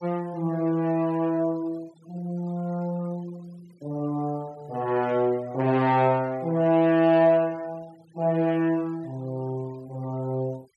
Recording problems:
denoising artefacts; signal-to-artefact ratio 26 dB

